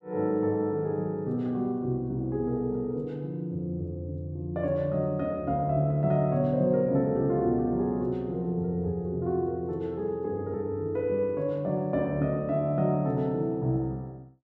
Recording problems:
none

